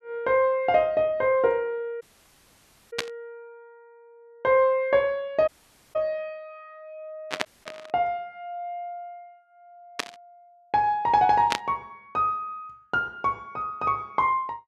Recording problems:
audio cutting out; at 2 s for 1 s, at 5.5 s and at 7.5 s
static burst; 4 times, first at 3 s; peak +3 dB vs average level

